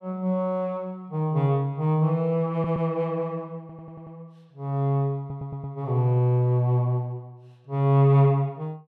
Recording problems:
audio stuttering; at 2.5 s, at 3.5 s and at 5 s

